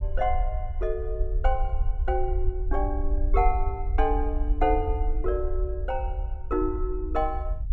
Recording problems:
rumble; below 54 Hz, SNR 0 dB

